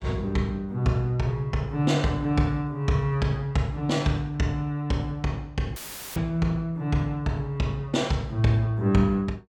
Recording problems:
audio cutting out; at 6 s; filled with static

